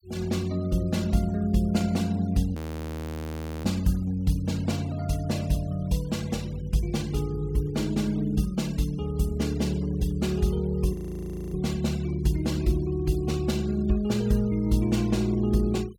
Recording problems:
denoising artefacts; signal-to-artefact ratio 23 dB
audio freezing; at 2.5 s for 1 s and at 11 s for 0.5 s

